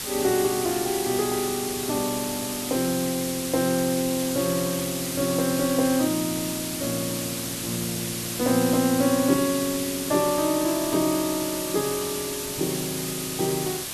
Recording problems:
background hiss; slope 0 dB per octave, SNR 4 dB

